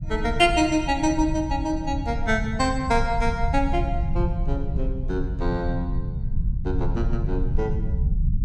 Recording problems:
rumble; below 110 Hz, SNR 3 dB

